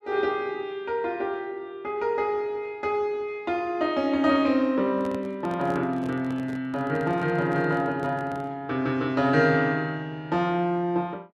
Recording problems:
handling noise; from 5 to 8.5 s; peak -9 dB vs average level

